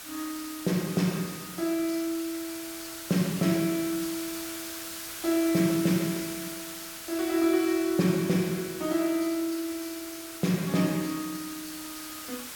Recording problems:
hiss; SNR 10 dB

